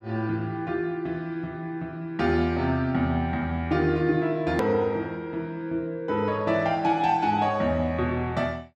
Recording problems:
edit click; at 4.5 s

